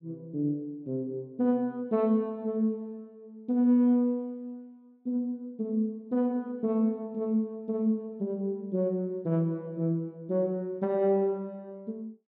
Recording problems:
none

